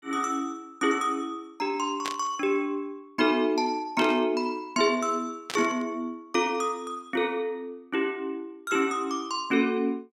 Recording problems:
static burst; at 2 s, at 4 s and at 5.5 s; peak -1 dB vs average level

